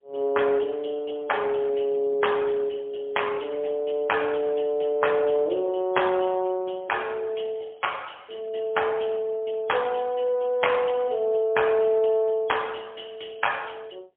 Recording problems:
telephone audio; 320 Hz to 3.4 kHz, AMR-NB, then MP3

